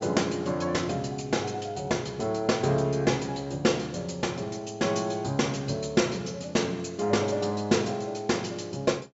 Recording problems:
low-pass filter; nothing above 8 kHz

